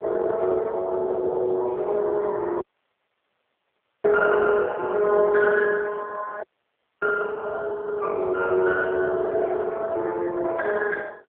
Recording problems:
telephone audio; 320 Hz to 2.8 kHz, AMR-NB
audio cutting out; at 2.5 s for 1.5 s and at 6.5 s for 0.5 s

